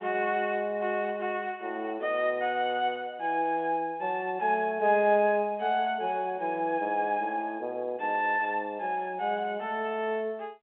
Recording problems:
telephone audio; 240 Hz to 3.7 kHz, G.711

